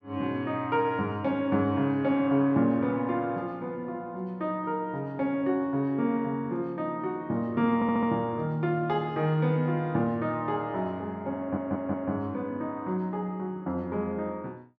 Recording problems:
stutter; at 8 s and at 11 s

